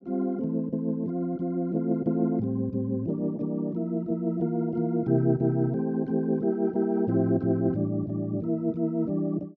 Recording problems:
none

